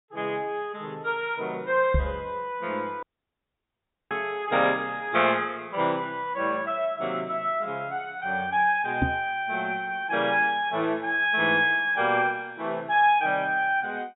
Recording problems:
treble cut off; nothing above 4 kHz
microphone bump; at 2 s and at 9 s; peak +4 dB vs average level
audio cutting out; at 3 s for 1 s

